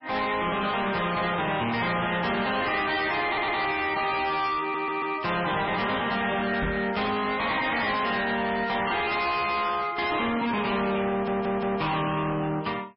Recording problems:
lossy codec; MP3, log-spectral distance 5 dB, nothing above 5.2 kHz
distorted audio; soft clipping, signal-to-distortion ratio 7 dB
audio stuttering; at 3.5 s, at 4.5 s and at 11 s
knock on the microphone; at 6.5 s; peak 0 dB vs average level

